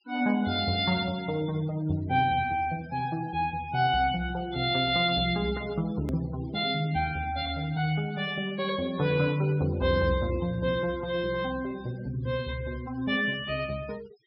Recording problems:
treble missing; nothing above 5.3 kHz
noise reduction artefacts; signal-to-artefact ratio 21 dB
click at an edit; at 6 s

